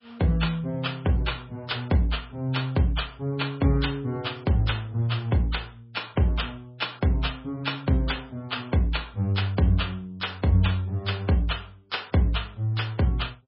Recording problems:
lossy compression; MP3, log-spectral distance 3 dB, nothing above 5 kHz

